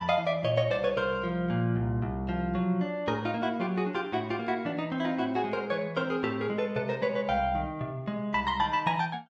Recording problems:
none

